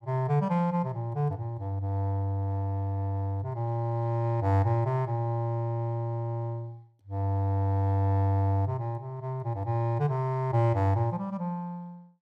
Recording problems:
none

